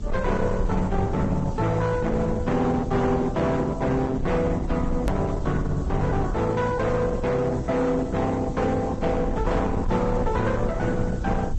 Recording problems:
lossy codec; Opus, then Vorbis, log-spectral distance 3 dB, nothing above 8 kHz
distortion; hard clipping, signal-to-distortion ratio 10 dB
background hiss; slope +3 dB per octave, SNR 28 dB
rumble; below 86 Hz, SNR 8 dB
hard cut with a click; at 5 s

